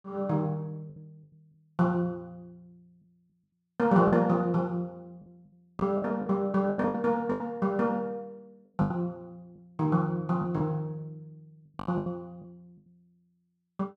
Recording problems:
packet loss; 8% of the sound replaced, filled with the last packet

